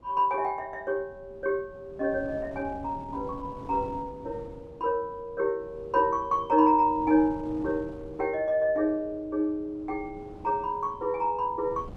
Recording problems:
wind on the microphone; below 390 Hz, SNR 19 dB

